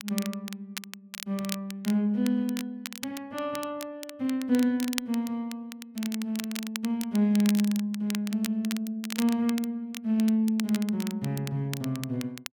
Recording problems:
crackle; vinyl, SNR 11 dB

